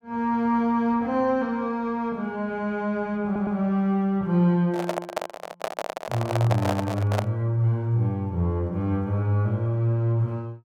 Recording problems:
audio stuttering; at 3.5 s
handling noise; from 4.5 to 7.5 s; peak +3 dB vs average level

